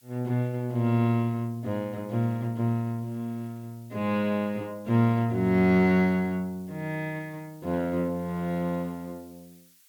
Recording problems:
hiss; slope +5 dB per octave, SNR 29 dB

